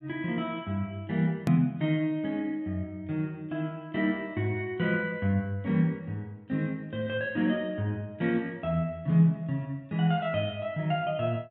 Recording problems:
hard cut with a click; at 1.5 s

